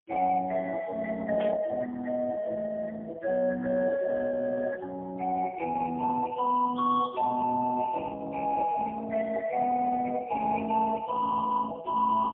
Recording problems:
phone line; 340 Hz to 2 kHz, AMR-NB, then MP3
static burst; at 1.5 s; peak -9 dB vs average level

